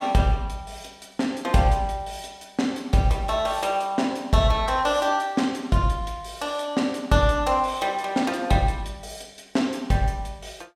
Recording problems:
none

